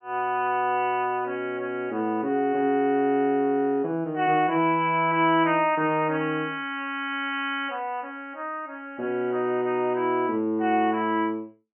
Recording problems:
low-pass filter; nothing above 3 kHz

